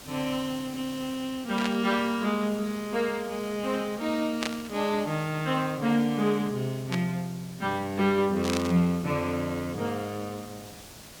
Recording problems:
hiss; slope -2 dB per octave, SNR 17 dB
static burst; 4 times, first at 1.5 s; peak +1 dB vs average level

